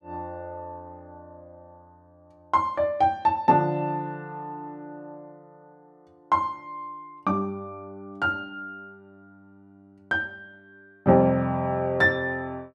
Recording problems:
none

